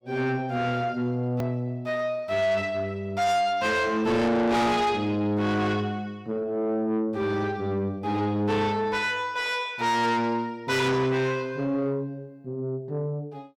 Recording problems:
distorted audio; soft clipping, signal-to-distortion ratio 7 dB
hard cut with a click; at 1.5 s

